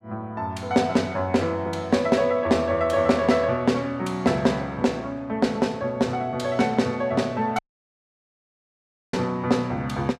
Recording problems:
audio cutting out; at 7.5 s for 1.5 s

